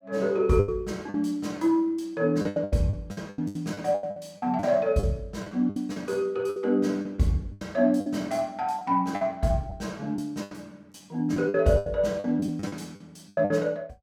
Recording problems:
packet loss; 13% of the sound replaced, filled with the last packet

